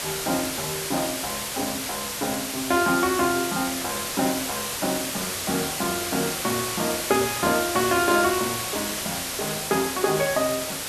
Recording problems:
background hiss; slope -1 dB per octave, SNR 2 dB

